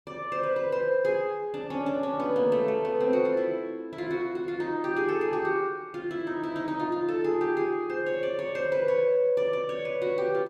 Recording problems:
none

